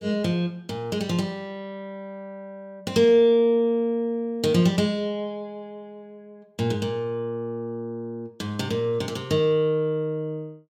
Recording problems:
none

